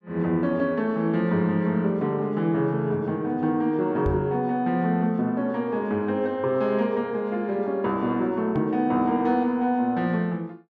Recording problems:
knock on the microphone; at 4 s and at 8.5 s; peak 0 dB vs average level

